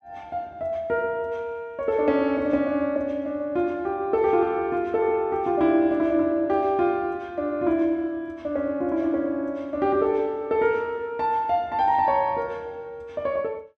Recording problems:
none

